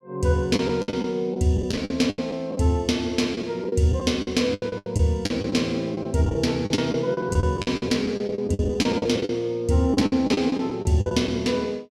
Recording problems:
packet loss; 16% of the sound replaced, filled with the last packet

